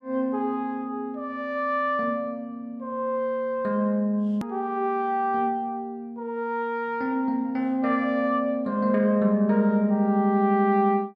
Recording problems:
hard cut with a click; at 4.5 s

